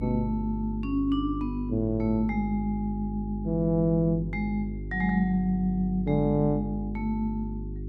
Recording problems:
hum; 50 Hz, harmonics up to 400 Hz, SNR 8 dB

